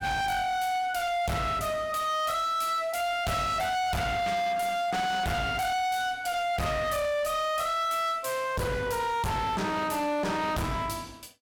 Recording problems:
distortion; hard clipping, signal-to-distortion ratio 6 dB

